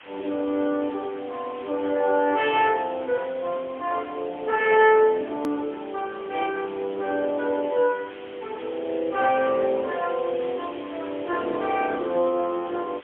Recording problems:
telephone audio; 300 Hz to 3.5 kHz, AMR-NB, then MP3
background hiss; SNR 20 dB
click at an edit; at 5.5 s

